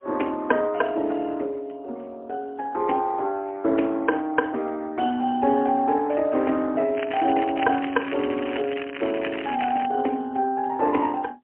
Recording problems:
phone line; 240 Hz to 3.1 kHz, AMR-NB, then MP3
crackle; from 7 to 10 s; loose cable, SNR 11 dB

